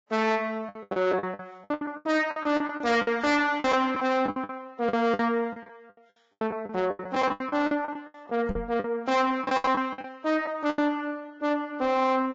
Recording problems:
lossy compression; Vorbis, log-spectral distance 2 dB, nothing above 7.3 kHz
distortion; soft clipping, signal-to-distortion ratio 8 dB
lost packets; 17% of the sound replaced, filled with the last packet
microphone thump; at 8.5 s; peak 0 dB vs average level

